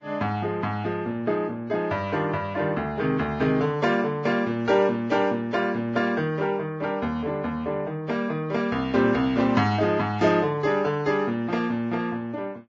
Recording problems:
lossy compression; Vorbis, log-spectral distance 2 dB

